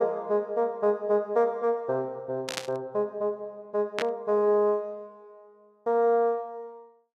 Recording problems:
burst of static; at 2.5 s and at 4 s; peak +1 dB vs average level

